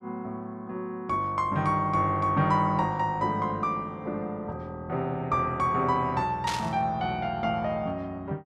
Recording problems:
static burst; at 6.5 s; peak -1 dB vs average level

